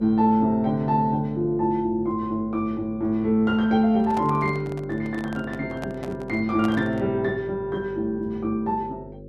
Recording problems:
electrical hum; 50 Hz, harmonics up to 550 Hz, SNR 17 dB
handling noise; from 4 to 7 s; peak -6 dB vs average level

